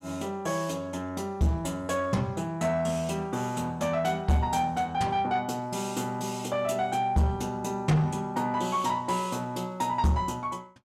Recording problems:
distorted audio; soft clipping, signal-to-distortion ratio 11 dB

